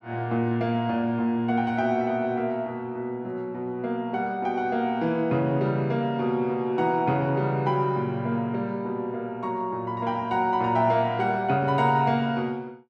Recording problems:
none

